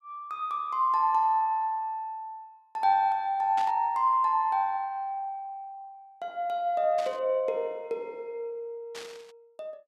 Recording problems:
static burst; at 3.5 s, at 7 s and at 9 s; peak -9 dB vs average level

